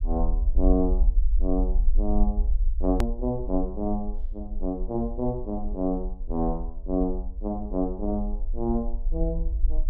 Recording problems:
low-frequency rumble; below 48 Hz, SNR 1 dB
click at an edit; at 3 s

